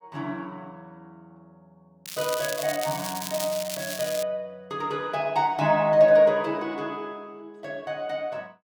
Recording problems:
crackling; from 2 to 4 s; loose cable, SNR 8 dB

